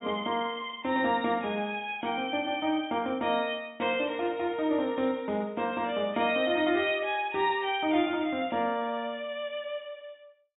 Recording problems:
treble missing; nothing above 3.8 kHz

